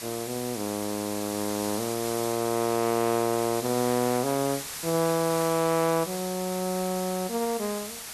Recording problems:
background hiss; slope +1 dB per octave, SNR 7 dB

